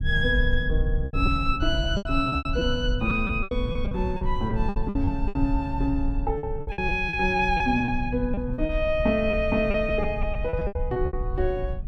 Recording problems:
rumble; below 74 Hz, SNR 4 dB
lost packets; 14% of the sound replaced, filled with repeated pitch periods

